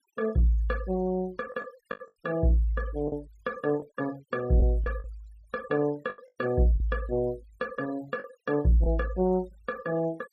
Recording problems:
denoising artefacts; signal-to-artefact ratio 23 dB
lost packets; 5% of the sound replaced, filled with the last packet

